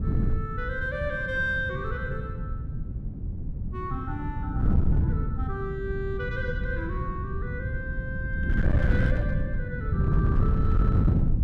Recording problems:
distortion; hard clipping, signal-to-distortion ratio 11 dB
wind noise; below 150 Hz, SNR -5 dB

